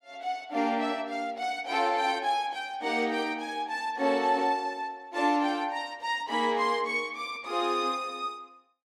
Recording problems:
none

